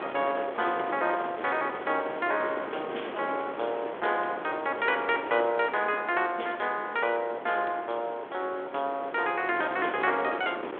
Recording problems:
phone line; 280 Hz to 3.5 kHz, G.726
wind noise; below 1.1 kHz, SNR 9 dB

